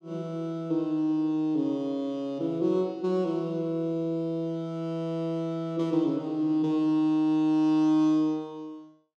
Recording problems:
none

